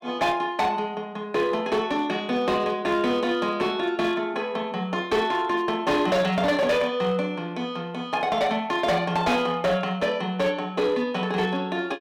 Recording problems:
distortion; hard clipping, signal-to-distortion ratio 12 dB

